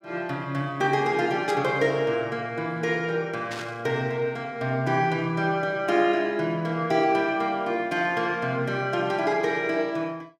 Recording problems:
burst of static; at 1.5 s and at 3.5 s; peak -7 dB vs average level

